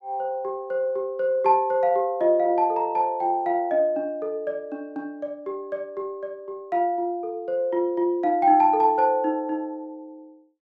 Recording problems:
none

